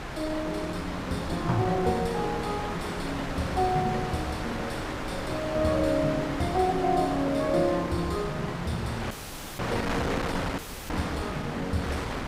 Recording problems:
wind on the microphone; below 1.6 kHz, SNR 4 dB
dropout; at 9 s and at 11 s

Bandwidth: 15.5 kHz